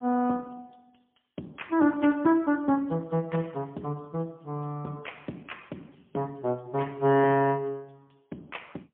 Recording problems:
phone line; 170 Hz to 3.3 kHz, AMR-NB, then MP3

